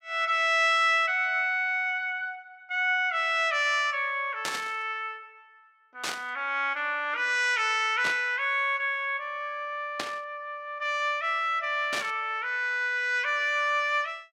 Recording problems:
static burst; 5 times, first at 4.5 s; peak -1 dB vs average level

